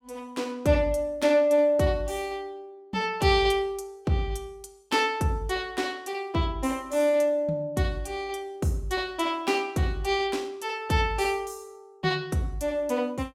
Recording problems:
none

